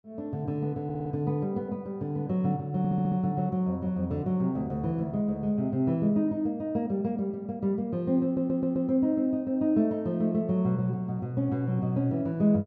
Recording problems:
stutter; at 1 s, at 3 s and at 8 s

